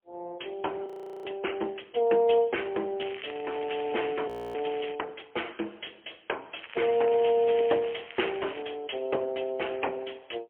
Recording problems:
telephone audio; 300 Hz to 3.3 kHz, AMR-NB, then MP3
audio freezing; at 1 s and at 4.5 s
crackling; from 3 to 5 s and from 6.5 to 8.5 s; loose cable, SNR 15 dB

